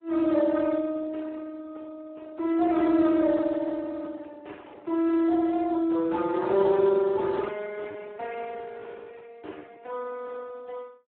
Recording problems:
phone line; 260 Hz to 2.2 kHz, Speex

